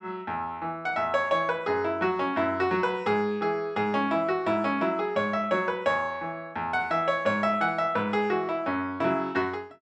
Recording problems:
none

